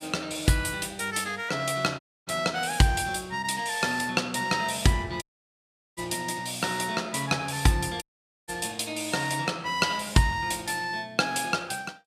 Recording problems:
dropout; at 2 s, at 5 s for 1 s and at 8 s

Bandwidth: 15.5 kHz